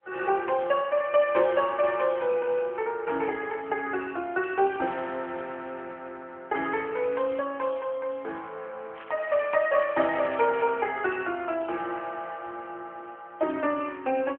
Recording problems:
phone line; 280 Hz to 3.1 kHz, AMR-NB
crackling; at 4.5 s and from 9 to 11 s; loose cable, SNR 21 dB

